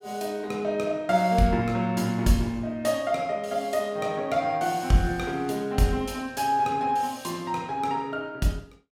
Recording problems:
none

